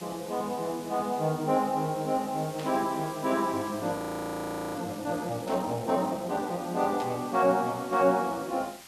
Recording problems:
hiss; slope -1 dB per octave, SNR 17 dB
static burst; at 2.5 s, at 5.5 s and at 7 s; peak -10 dB vs average level
audio freezing; at 4 s for 1 s

